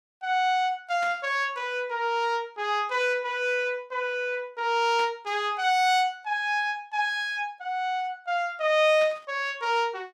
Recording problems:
burst of static; at 1 s, at 5 s and at 9 s; peak -10 dB vs average level

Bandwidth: 15 kHz